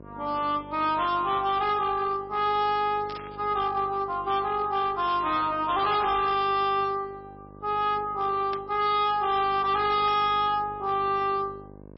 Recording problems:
codec artefacts; MP3, log-spectral distance 2 dB, nothing above 4.6 kHz
distortion; hard clipping, signal-to-distortion ratio 11 dB
hum; 50 Hz, harmonics up to 1.1 kHz, SNR 21 dB
burst of static; 4 times, first at 3 s; peak -10 dB vs average level

